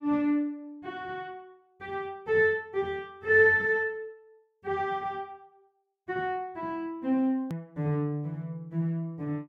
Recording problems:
click at an edit; at 7.5 s

